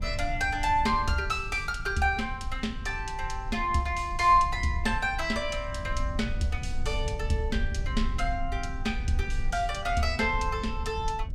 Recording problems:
rumble; below 68 Hz, SNR 7 dB

